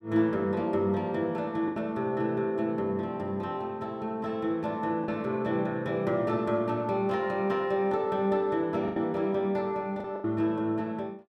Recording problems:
packet loss; 3% of the sound replaced, filled with the last packet

